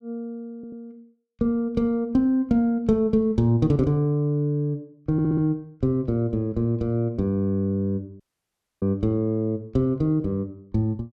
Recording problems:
audio stuttering; at 0.5 s and at 5 s
audio cutting out; at 8 s for 0.5 s

